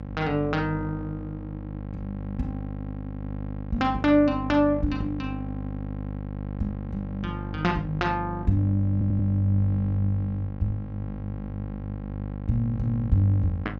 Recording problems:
hum; 50 Hz, harmonics up to 1.1 kHz, SNR 8 dB
audio stuttering; at 9 s

